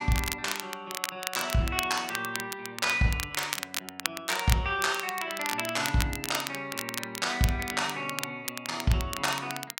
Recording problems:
crackle; vinyl, SNR 6 dB

